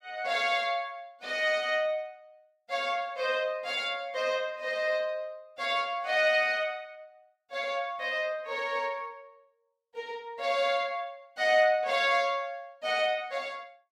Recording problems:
none

